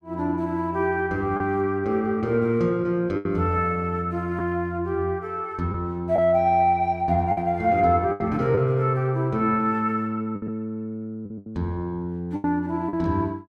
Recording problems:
packet loss; 5% of the sound replaced, filled with the last packet

